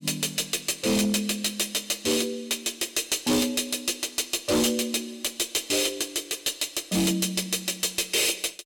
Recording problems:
distorted audio; hard clipping, uneven, signal-to-distortion ratio 10 dB

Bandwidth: 17 kHz